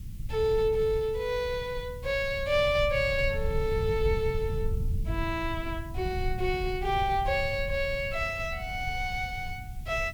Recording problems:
background hiss; slope +2 dB per octave, SNR 26 dB
low-frequency rumble; below 98 Hz, SNR 7 dB

